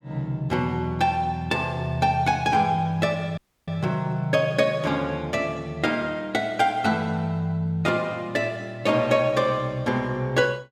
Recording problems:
dropout; at 3.5 s

